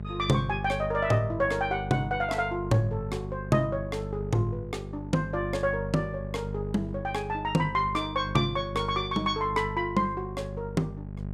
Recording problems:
electrical hum; 50 Hz, harmonics up to 800 Hz, SNR 8 dB

